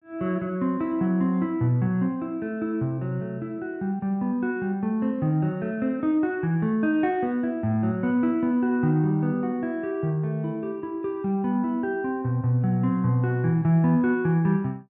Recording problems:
none

